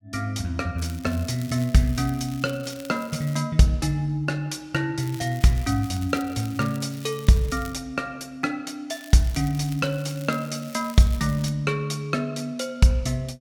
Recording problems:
crackling; from 1 to 3.5 s, from 5 to 8 s and from 9 to 11 s; loose cable, SNR 20 dB

